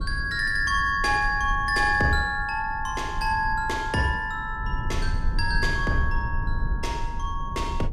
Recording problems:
rumble; below 74 Hz, SNR 8 dB

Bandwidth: 15 kHz